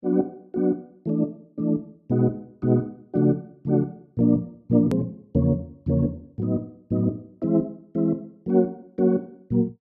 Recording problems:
hard cut with a click; at 5 s

